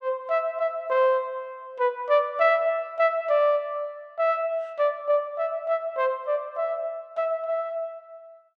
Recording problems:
none

